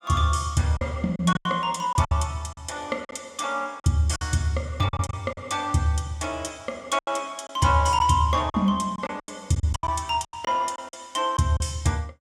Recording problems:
packet loss; 10% of the sound replaced, filled with silence

